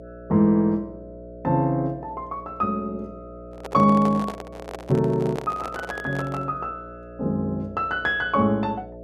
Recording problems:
electrical hum; 60 Hz, harmonics up to 660 Hz, SNR 17 dB
microphone handling noise; from 3.5 to 6.5 s; peak -5 dB vs average level

